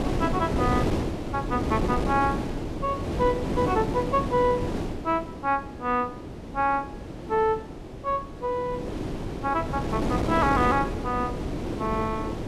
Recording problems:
wind noise; below 470 Hz, SNR 3 dB

